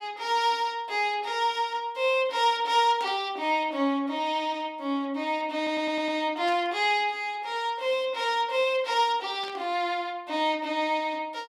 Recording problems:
static burst; at 3 s, at 6.5 s and at 9.5 s; peak -12 dB vs average level
stutter; at 5.5 s

